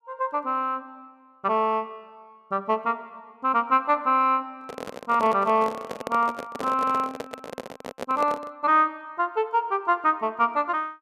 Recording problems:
microphone handling noise; from 4.5 to 8.5 s; peak -3 dB vs average level

